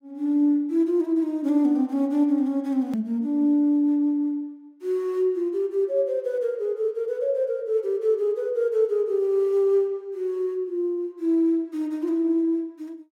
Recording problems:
edit click; at 3 s

